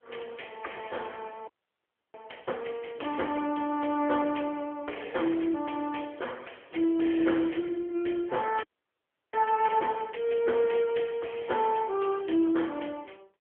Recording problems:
telephone audio; 260 Hz to 3.3 kHz, AMR-NB
audio freezing; at 1.5 s for 0.5 s and at 8.5 s for 0.5 s

